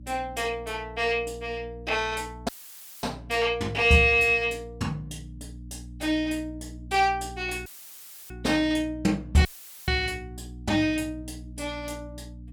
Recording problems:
mains hum; 60 Hz, harmonics up to 300 Hz, SNR 17 dB
dropout; at 2.5 s for 0.5 s, at 7.5 s for 0.5 s and at 9.5 s; filled with static

